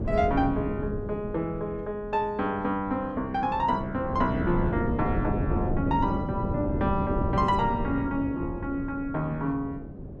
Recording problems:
wind noise; below 290 Hz, SNR 3 dB

